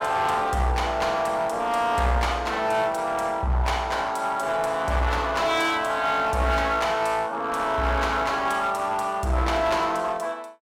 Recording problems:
distortion; hard clipping, uneven, signal-to-distortion ratio 10 dB

